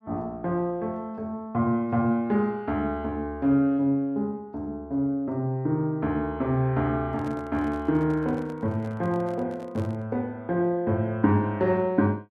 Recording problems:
handling noise; from 7 to 10 s; peak -10 dB vs average level

